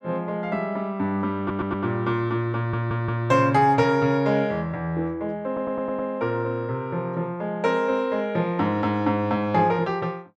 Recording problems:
audio stuttering; at 1.5 s, at 2.5 s and at 5.5 s

